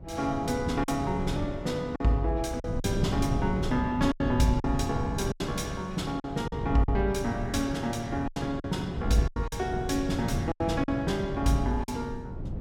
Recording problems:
wind noise; below 180 Hz, SNR 6 dB
lost packets; 7% of the sound replaced, filled with silence

